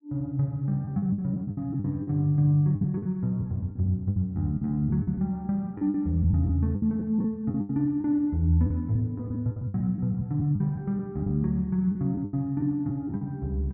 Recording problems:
lost packets; 11% of the sound replaced, filled with the last packet

